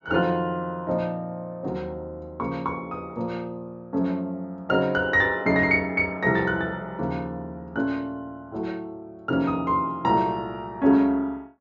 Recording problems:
treble cut off; nothing above 6.9 kHz

